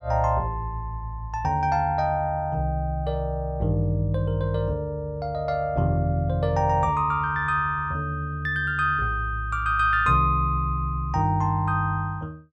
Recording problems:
none

